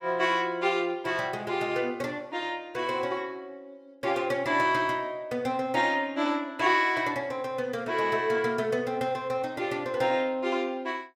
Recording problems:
none

